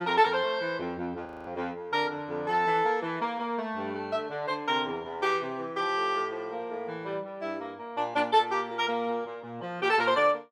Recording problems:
frozen audio; at 1.5 s

